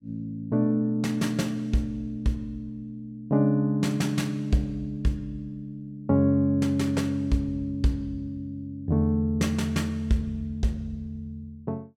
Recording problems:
none

